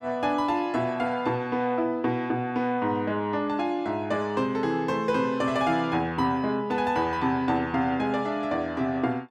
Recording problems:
none

